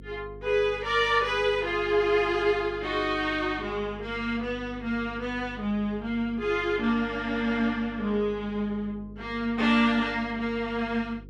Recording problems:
hum; 50 Hz, harmonics up to 500 Hz, SNR 18 dB

